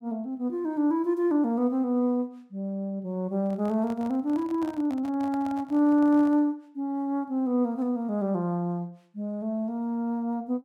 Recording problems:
handling noise; from 3.5 to 6.5 s; peak -12 dB vs average level

